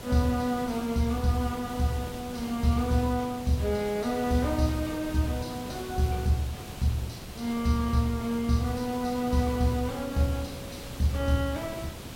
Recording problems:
hiss; slope -4 dB per octave, SNR 11 dB

